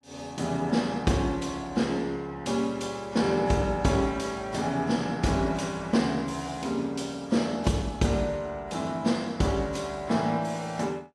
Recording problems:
codec artefacts; AAC, log-spectral distance 2 dB, nothing above 11.3 kHz

